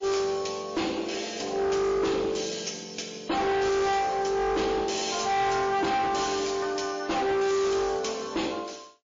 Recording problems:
codec artefacts; MP3, then MP3, log-spectral distance 6 dB, nothing above 6 kHz
distorted audio; hard clipping, uneven, signal-to-distortion ratio 6 dB

